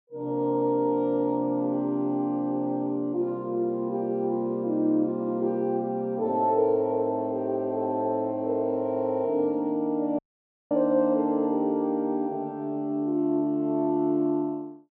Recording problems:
audio cutting out; at 10 s for 0.5 s

